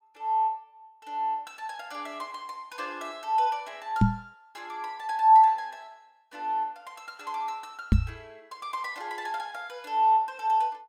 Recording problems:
microphone thump; at 4 s and at 8 s; peak +9 dB vs average level

